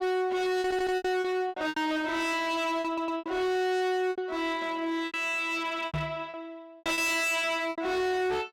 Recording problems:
distortion; hard clipping, uneven, signal-to-distortion ratio 5 dB
lost packets; 12% of the sound replaced, filled with repeated pitch periods
stutter; at 0.5 s and at 3 s
microphone bump; at 6 s; peak -1 dB vs average level

